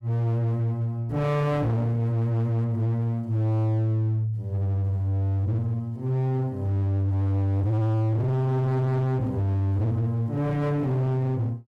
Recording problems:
distorted audio; hard clipping, uneven, signal-to-distortion ratio 6 dB

